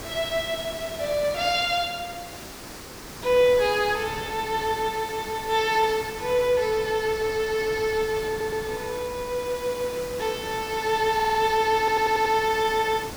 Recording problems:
hiss; slope -3 dB per octave, SNR 14 dB
wind noise; below 700 Hz, SNR 20 dB
stutter; at 8.5 s, at 11 s and at 12 s

